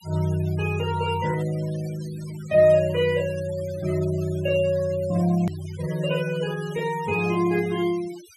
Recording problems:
denoising artefacts; signal-to-artefact ratio 19 dB
click at an edit; at 5.5 s

